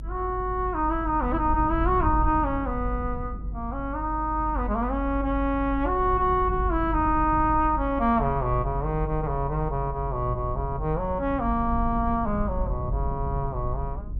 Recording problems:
rumble; below 72 Hz, strongest tone 48 Hz, SNR 6 dB

